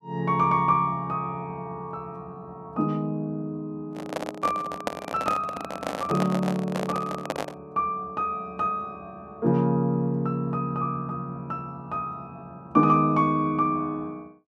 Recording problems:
microphone handling noise; from 4 to 7.5 s; peak +3 dB vs average level

